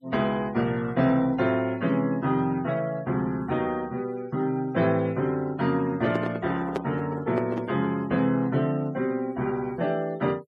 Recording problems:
noise reduction artefacts; signal-to-artefact ratio 23 dB
handling noise; from 6 to 8 s; peak +2 dB vs average level

